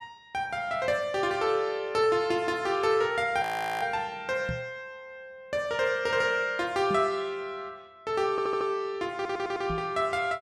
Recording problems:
audio freezing; at 3.5 s
microphone thump; at 4.5 s, at 7 s and at 9.5 s; peak -3 dB vs average level
audio stuttering; at 8.5 s and at 9 s

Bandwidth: 14.5 kHz